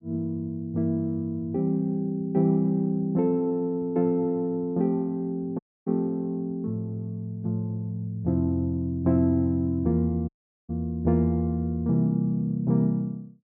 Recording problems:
dropout; at 5.5 s and at 10 s

